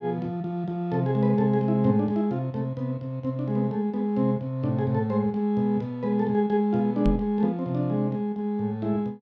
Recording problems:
knock on the microphone; at 7 s; peak +2 dB vs average level

